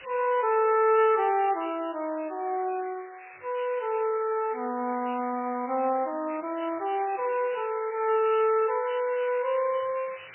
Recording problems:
lossy codec; MP3, log-spectral distance 20 dB, nothing above 2.7 kHz
hiss; SNR 18 dB

